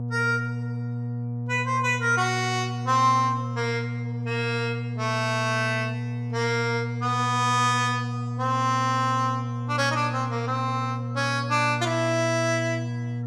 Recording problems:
hum; 60 Hz, harmonics up to 720 Hz, SNR 5 dB

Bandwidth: 15.5 kHz